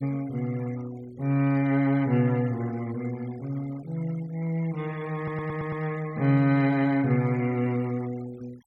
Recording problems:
denoising artefacts; signal-to-artefact ratio 23 dB
stutter; at 5 s

